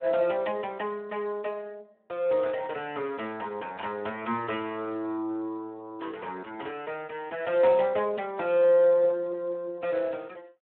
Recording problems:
phone line; 280 Hz to 3.4 kHz, Speex

